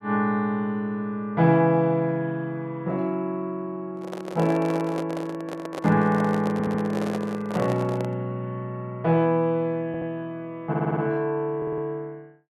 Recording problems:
microphone handling noise; from 4 to 8 s; peak -3 dB vs average level
stutter; 4 times, first at 6.5 s

